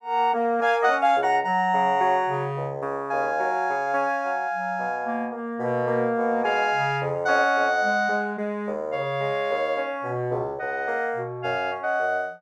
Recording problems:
none

